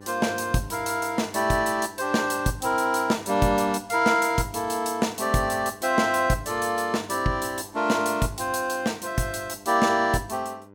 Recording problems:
hum; 50 Hz, harmonics up to 1.5 kHz, SNR 24 dB

